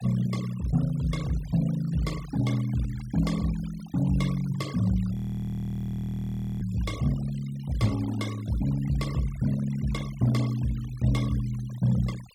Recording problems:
noise reduction artefacts; signal-to-artefact ratio 18 dB
audio freezing; at 5 s for 1.5 s

